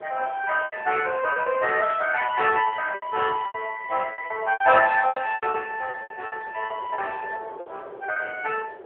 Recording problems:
telephone audio; 390 Hz to 3.3 kHz, AMR-NB
wind noise; below 680 Hz, SNR 20 dB
lost packets; 13% of the sound replaced, filled with repeated pitch periods

